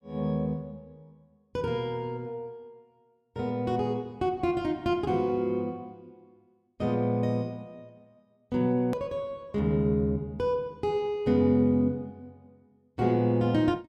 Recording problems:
edit click; at 9 s

